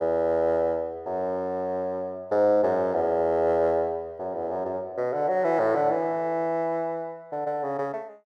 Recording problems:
none

